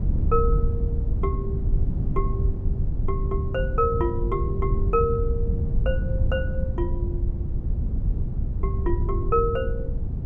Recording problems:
rumble; below 98 Hz, SNR -2 dB

